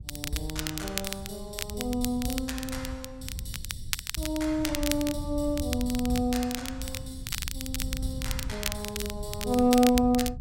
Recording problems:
wind on the microphone; below 100 Hz, SNR 10 dB
crackle; vinyl, SNR 7 dB

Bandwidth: 16 kHz